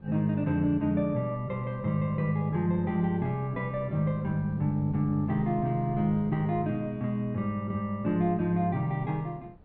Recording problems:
wind noise; below 270 Hz, SNR 21 dB

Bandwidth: 4.5 kHz